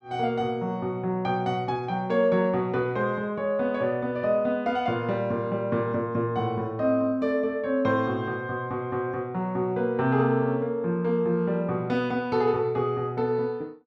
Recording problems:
none

